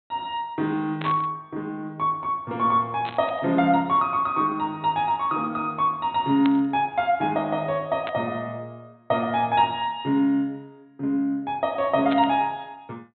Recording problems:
treble missing; nothing above 4.1 kHz
burst of static; 5 times, first at 1 s; peak -5 dB vs average level

